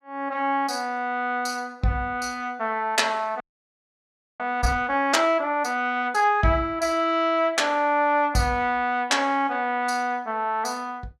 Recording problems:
audio freezing; at 3.5 s for 1 s

